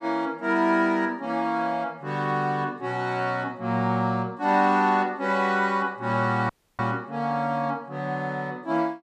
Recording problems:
dropout; at 6.5 s

